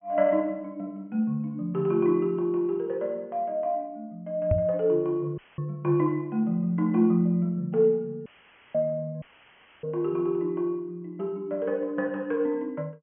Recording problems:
treble missing; nothing above 3.2 kHz
microphone thump; at 4.5 s; peak +5 dB vs average level
dropout; at 5.5 s, at 8.5 s and at 9 s for 0.5 s; filled with static

